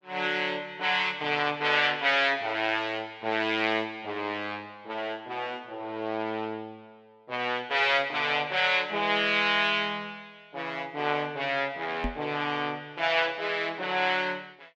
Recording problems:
knock on the microphone; at 12 s; peak -1 dB vs average level

